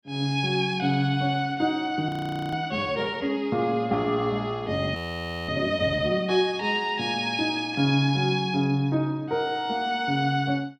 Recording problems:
frozen audio; at 2 s and at 5 s for 0.5 s

